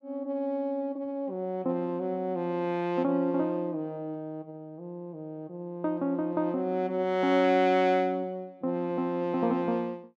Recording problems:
none

